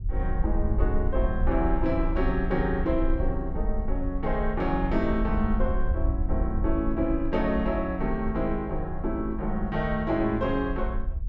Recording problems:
wind noise; below 60 Hz, SNR 3 dB

